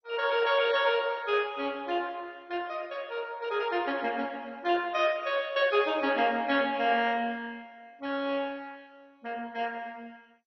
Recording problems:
lossy codec; MP2, log-spectral distance 4 dB, nothing above 5.2 kHz

